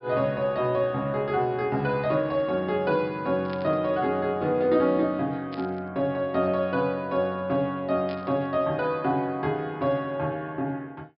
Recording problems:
treble missing; nothing above 5.3 kHz
burst of static; at 3.5 s, at 5.5 s and at 8 s; peak -12 dB vs average level

